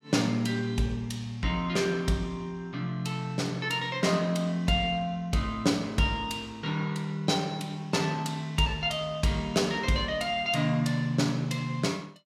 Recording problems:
none

